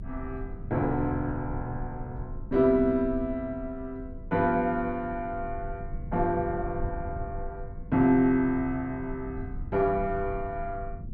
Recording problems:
rumble; below 100 Hz, strongest tone 24 Hz, SNR 12 dB

